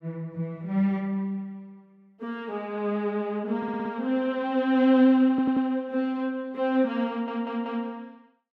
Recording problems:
stutter; at 3.5 s, at 5.5 s and at 7 s

